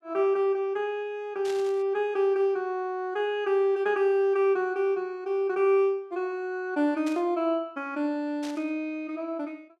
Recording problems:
burst of static; at 1.5 s, at 7 s and at 8.5 s; peak -11 dB vs average level

